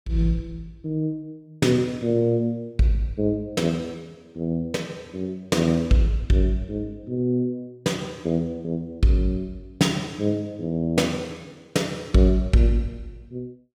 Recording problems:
none

